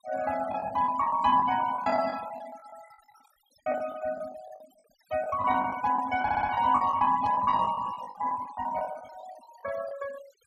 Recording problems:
denoising artefacts; signal-to-artefact ratio 17 dB
lost packets; 16% of the sound replaced, filled with the last packet
audio stuttering; at 6 s
burst of static; at 7 s; peak -19 dB vs average level

